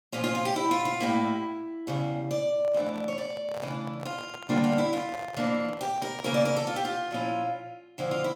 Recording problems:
microphone handling noise; from 2.5 to 6.5 s; peak -7 dB vs average level

